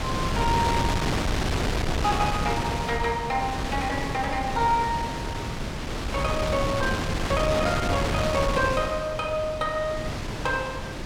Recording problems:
wind on the microphone; below 1.2 kHz, SNR 1 dB

